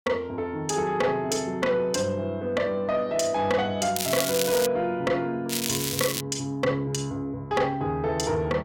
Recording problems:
distortion; soft clipping, signal-to-distortion ratio 10 dB
crackling; at 4 s and at 5.5 s; loose cable, SNR 2 dB

